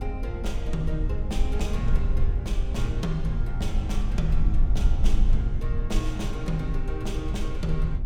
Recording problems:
rumble; below 54 Hz, SNR -4 dB

